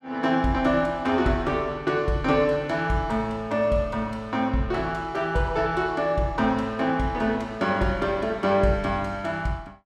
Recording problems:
none

